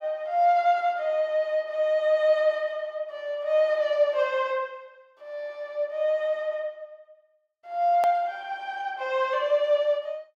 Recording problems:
hard cut with a click; at 8 s

